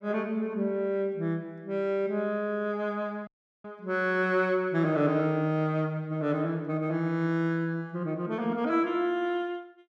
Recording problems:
audio cutting out; at 3.5 s

